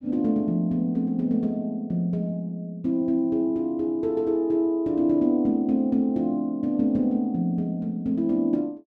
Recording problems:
none

